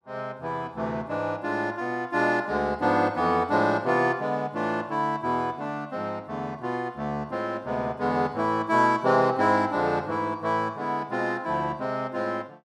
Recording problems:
none

